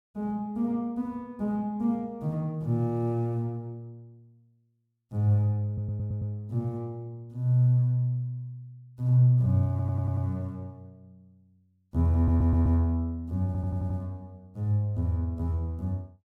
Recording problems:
audio stuttering; 4 times, first at 5.5 s

